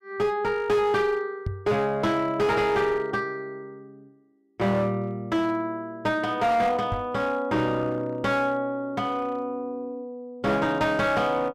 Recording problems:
distorted audio; hard clipping, uneven, signal-to-distortion ratio 10 dB
microphone thump; at 1.5 s and at 7 s; peak -1 dB vs average level

